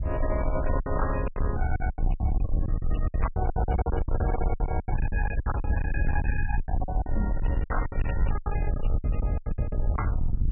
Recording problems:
lossy codec; MP3, log-spectral distance 2 dB, nothing above 2.5 kHz
distortion; soft clipping, signal-to-distortion ratio 8 dB
rumble; below 80 Hz, SNR -3 dB
lost packets; 19% of the sound replaced, filled with silence
crackling; from 6.5 to 8 s; loose cable, SNR 27 dB

